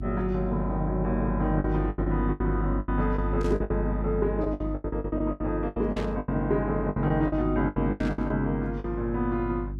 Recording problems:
electrical hum; 50 Hz, harmonics up to 350 Hz, SNR 4 dB
packet loss; 15% of the sound replaced, filled with the last packet
static burst; at 3.5 s, at 6 s and at 8 s; peak -7 dB vs average level

